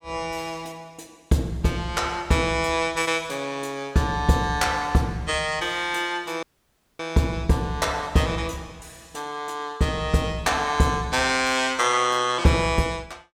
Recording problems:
dropout; at 6.5 s for 0.5 s

